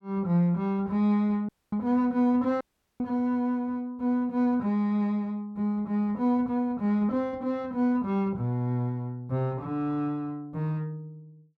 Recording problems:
dropout; at 1.5 s and at 2.5 s

